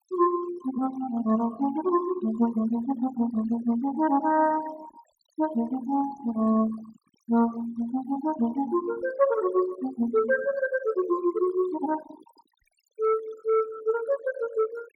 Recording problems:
noise reduction artefacts; signal-to-artefact ratio 18 dB

